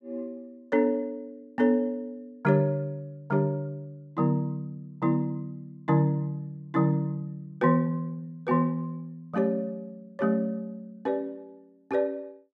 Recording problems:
none

